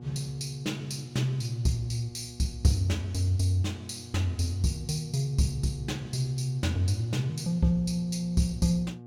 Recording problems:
hum; 60 Hz, harmonics up to 840 Hz, SNR 17 dB

